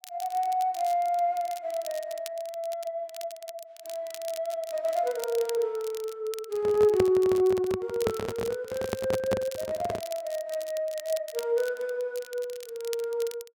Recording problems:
crackling; vinyl, SNR 16 dB
handling noise; from 6.5 to 10 s; peak +5 dB vs average level

